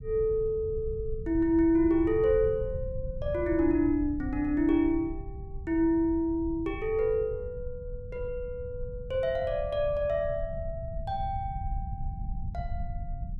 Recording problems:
rumble; below 98 Hz, SNR 11 dB

